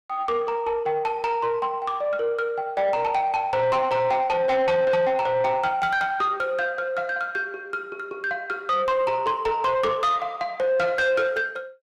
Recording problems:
distorted audio; soft clipping, signal-to-distortion ratio 10 dB

